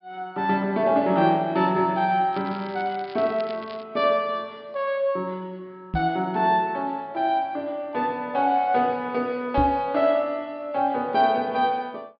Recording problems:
treble cut off; nothing above 5.1 kHz
crackling; from 2.5 to 4 s; loose cable, SNR 22 dB
knock on the microphone; at 6 s and at 9.5 s; peak +1 dB vs average level

